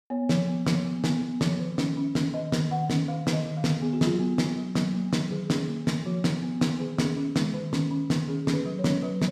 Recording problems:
none

